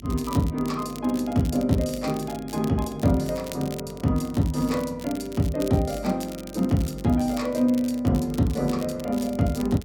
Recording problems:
electrical hum; 50 Hz, harmonics up to 400 Hz, SNR 23 dB
crackling; vinyl, SNR 19 dB

